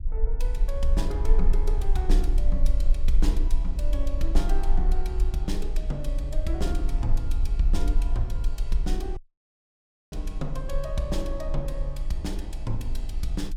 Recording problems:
low-frequency rumble; below 40 Hz, strongest tone 22 Hz, SNR -5 dB
audio cutting out; at 9 s for 1 s

